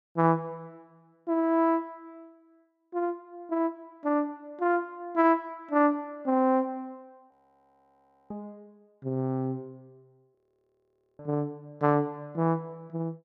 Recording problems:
audio freezing; at 7.5 s for 1 s and at 10 s for 1 s

